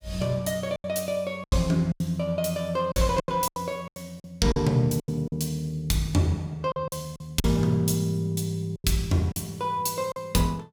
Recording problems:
packet loss; 10% of the sound replaced, filled with silence

